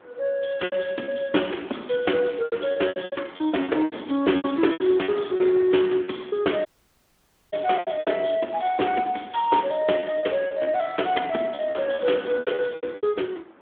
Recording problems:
telephone audio; 240 Hz to 3.4 kHz, Speex
wind on the microphone; below 1.4 kHz, SNR 22 dB
packet loss; 13% of the sound replaced, filled with repeated pitch periods
audio cutting out; at 6.5 s for 1 s

